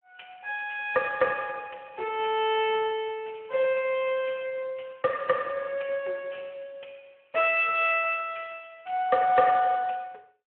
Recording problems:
telephone audio; 300 Hz to 3.2 kHz, Speex

